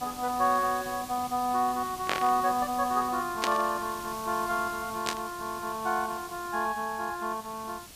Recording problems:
background hiss; SNR 13 dB
burst of static; at 2 s, at 3.5 s and at 5 s; peak +4 dB vs average level

